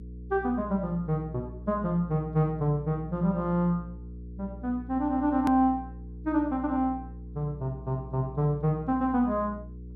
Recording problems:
hum; 60 Hz, harmonics up to 480 Hz, SNR 14 dB
edit click; at 5.5 s

